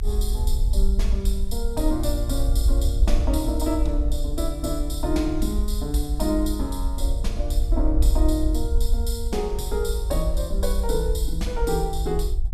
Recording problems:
rumble; below 56 Hz, SNR -2 dB

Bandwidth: 14.5 kHz